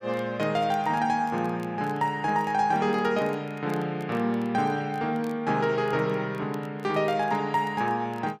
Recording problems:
crackle; vinyl, SNR 29 dB

